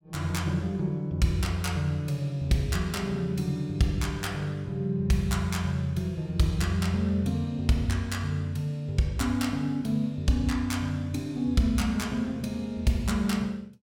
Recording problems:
none

